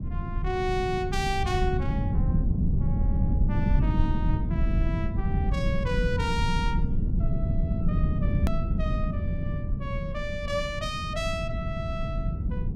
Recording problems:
rumble; below 150 Hz, SNR -5 dB
click at an edit; at 8.5 s

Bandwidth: 16 kHz